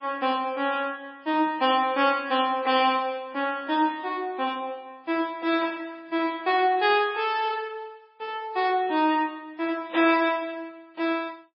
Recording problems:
lossy codec; MP3, log-spectral distance 2 dB, nothing above 4.9 kHz

